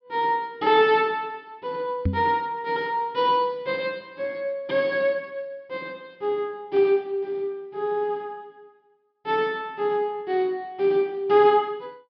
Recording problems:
treble missing; nothing above 5.5 kHz
knock on the microphone; at 2 s; peak +4 dB vs average level

